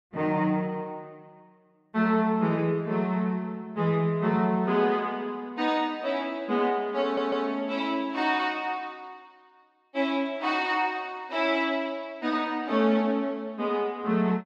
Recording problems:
audio stuttering; at 7 s

